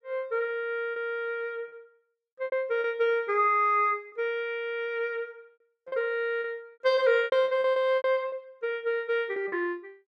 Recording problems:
packet loss; 8% of the sound replaced, filled with repeated pitch periods

